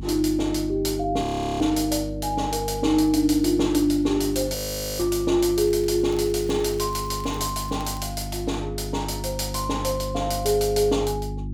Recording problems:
hum; 50 Hz, harmonics up to 350 Hz, SNR 10 dB
audio freezing; at 1 s and at 4.5 s
crackle; from 5.5 to 8 s; loose cable, SNR 23 dB

